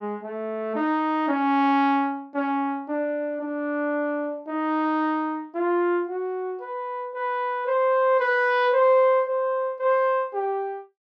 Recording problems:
none

